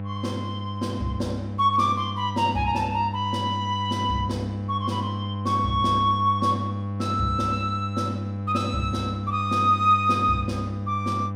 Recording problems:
hum; 50 Hz, harmonics up to 1 kHz, SNR 6 dB

